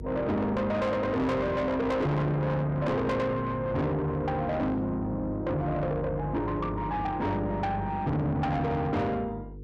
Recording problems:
distortion; soft clipping, signal-to-distortion ratio 7 dB
hum; 50 Hz, harmonics up to 500 Hz, SNR 13 dB

